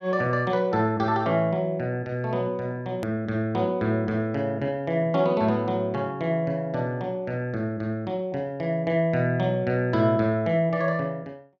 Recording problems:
hard cut with a click; at 3 s

